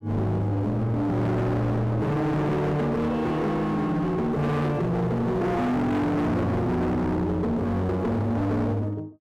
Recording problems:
distortion; hard clipping, uneven, signal-to-distortion ratio 6 dB

